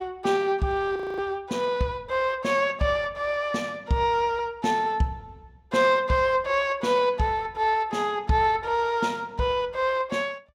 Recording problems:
audio freezing; at 1 s

